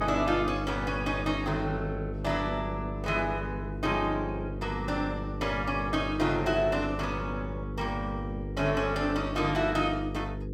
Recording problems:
hum; 50 Hz, harmonics up to 500 Hz, SNR 6 dB

